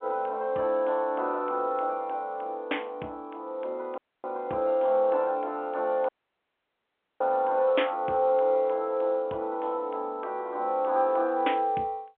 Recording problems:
phone line; 260 Hz to 3.4 kHz, G.711
audio cutting out; at 4 s and at 6 s for 1 s

